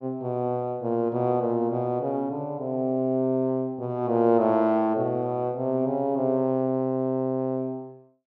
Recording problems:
none

